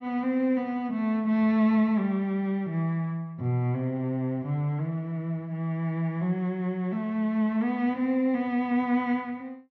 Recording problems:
treble cut off; nothing above 6.1 kHz

